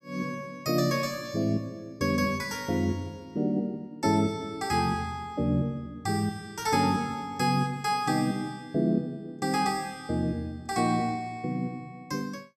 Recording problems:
none

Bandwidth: 13.5 kHz